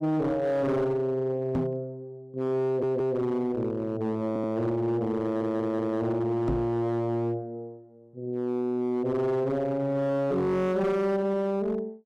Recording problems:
distortion; hard clipping, signal-to-distortion ratio 10 dB
microphone bump; at 1.5 s and at 6.5 s; peak +2 dB vs average level
stutter; at 2.5 s, at 4.5 s and at 5 s

